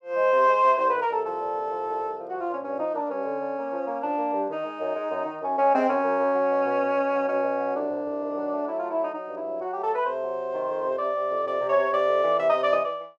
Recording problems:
none

